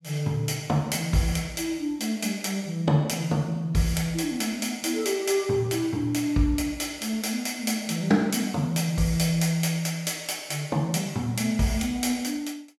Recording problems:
none

